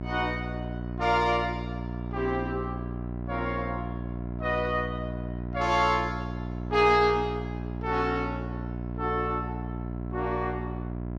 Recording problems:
hum; 60 Hz, harmonics up to 1 kHz, SNR 6 dB

